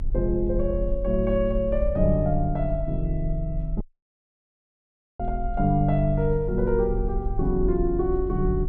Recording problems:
rumble; below 44 Hz, strongest tone 42 Hz, SNR 6 dB
audio cutting out; at 4 s for 1.5 s

